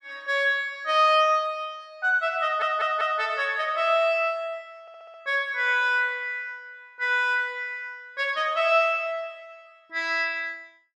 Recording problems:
stutter; at 2.5 s and at 5 s

